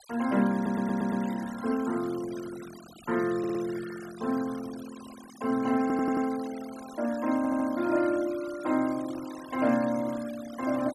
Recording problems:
denoising artefacts; signal-to-artefact ratio 18 dB
audio stuttering; 4 times, first at 0.5 s

